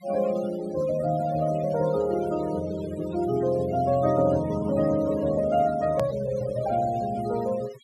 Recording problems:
noise reduction artefacts; signal-to-artefact ratio 17 dB
hard cut with a click; at 6 s

